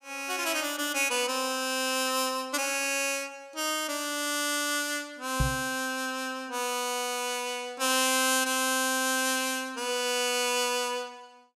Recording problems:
microphone bump; at 5.5 s; peak +3 dB vs average level

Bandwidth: 15 kHz